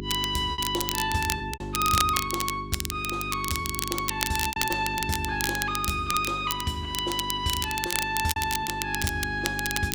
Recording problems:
hum; 50 Hz, harmonics up to 400 Hz, SNR 10 dB
crackle; vinyl, SNR 3 dB
packet loss; 5% of the sound replaced, filled with repeated pitch periods

